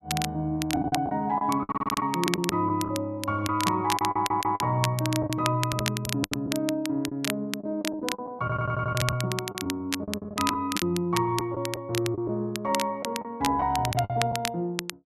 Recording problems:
crackle; vinyl, SNR 7 dB
lost packets; 9% of the sound replaced, filled with the last packet
audio stuttering; at 1.5 s, at 4 s and at 8.5 s

